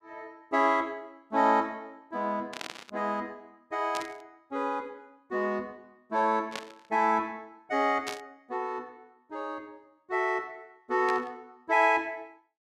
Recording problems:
burst of static; 5 times, first at 2.5 s; peak -2 dB vs average level

